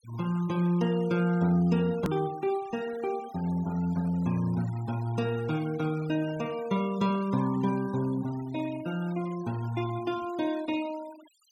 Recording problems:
denoising artefacts; signal-to-artefact ratio 20 dB
click at an edit; at 2 s

